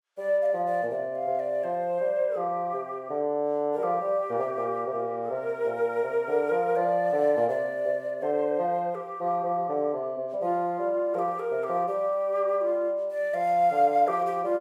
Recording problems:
none

